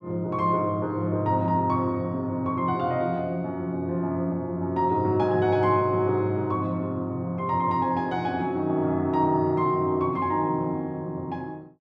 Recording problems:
none

